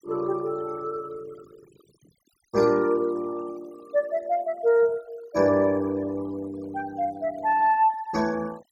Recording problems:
noise reduction artefacts; signal-to-artefact ratio 23 dB

